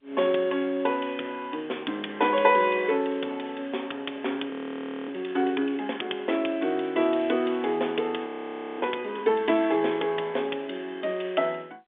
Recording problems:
telephone audio; 220 Hz to 3.6 kHz, G.711
frozen audio; at 4.5 s for 0.5 s and at 8.5 s for 0.5 s

